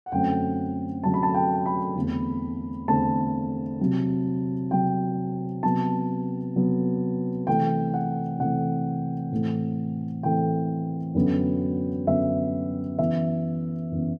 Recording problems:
none

